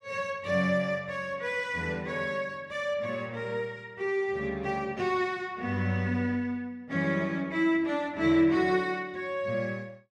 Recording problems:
none

